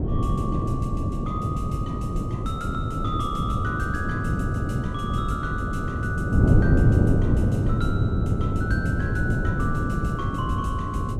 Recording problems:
wind on the microphone; below 230 Hz, SNR -7 dB

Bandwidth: 15 kHz